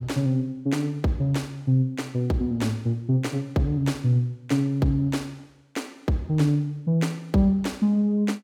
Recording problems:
none

